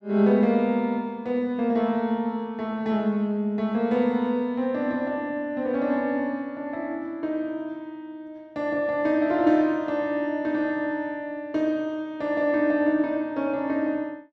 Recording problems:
none

